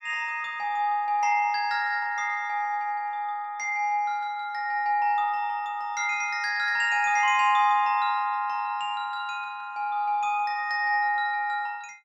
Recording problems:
none

